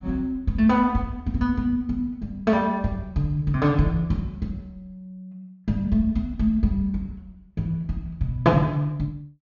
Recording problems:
treble cut off; nothing above 7 kHz

